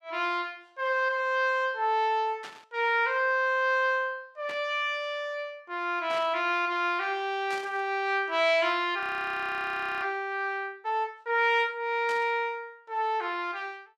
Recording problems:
burst of static; 5 times, first at 2.5 s; peak -10 dB vs average level
audio freezing; at 9 s for 1 s

